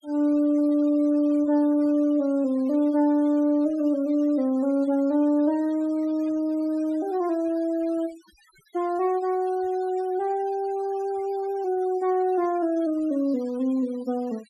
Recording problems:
denoising artefacts; signal-to-artefact ratio 27 dB

